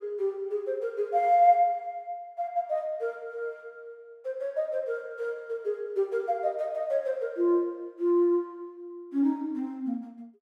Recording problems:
none

